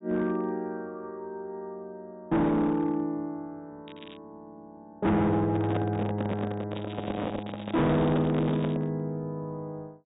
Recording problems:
treble cut off; nothing above 4 kHz
distorted audio; hard clipping, uneven, signal-to-distortion ratio 7 dB
crackling; at 4 s and from 7 to 9 s; loose cable, SNR 21 dB
handling noise; from 5.5 to 9 s; peak +2 dB vs average level

